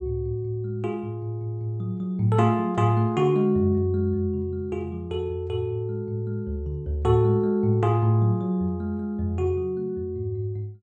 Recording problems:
none

